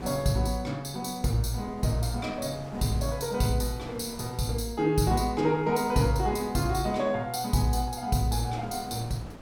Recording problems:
wind noise; below 670 Hz, SNR 18 dB

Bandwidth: 17.5 kHz